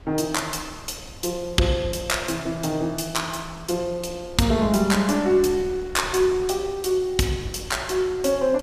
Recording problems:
wind on the microphone; below 280 Hz, SNR 19 dB

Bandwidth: 15 kHz